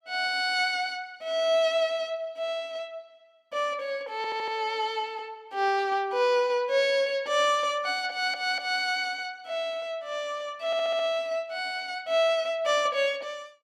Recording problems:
stutter; at 4 s, at 8 s and at 11 s

